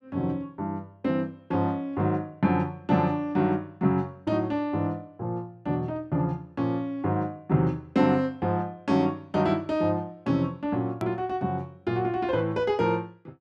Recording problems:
hard cut with a click; at 11 s

